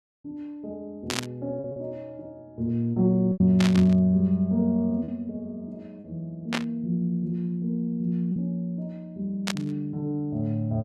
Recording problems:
lost packets; 3% of the sound replaced, filled with repeated pitch periods
burst of static; 4 times, first at 1 s; peak +2 dB vs average level

